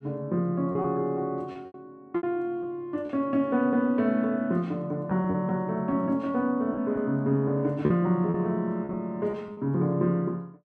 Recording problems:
packet loss; 6% of the sound replaced, filled with repeated pitch periods

